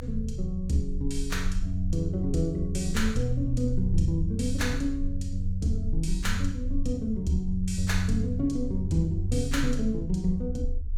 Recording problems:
rumble; below 46 Hz, strongest tone 22 Hz, SNR 7 dB

